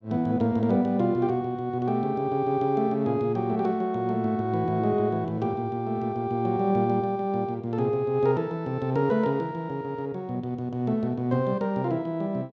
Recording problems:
none

